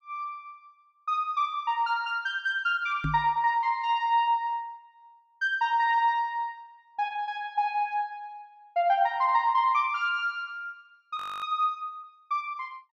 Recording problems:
knock on the microphone; at 3 s; peak 0 dB vs average level
audio freezing; at 11 s

